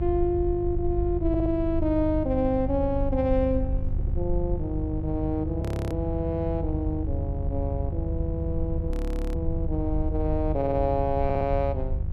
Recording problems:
hum; 50 Hz, harmonics up to 550 Hz, SNR 6 dB
rumble; below 78 Hz, SNR 4 dB
stutter; 4 times, first at 1.5 s
audio freezing; at 5.5 s and at 9 s

